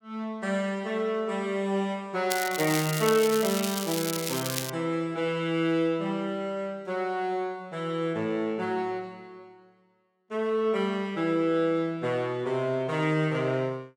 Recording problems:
crackling; from 2.5 to 4.5 s; loose cable, SNR 5 dB

